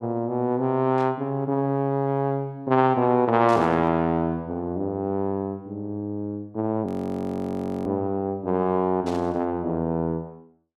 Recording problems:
static burst; at 1 s, at 3.5 s and at 9 s; peak -12 dB vs average level
audio freezing; at 7 s for 1 s

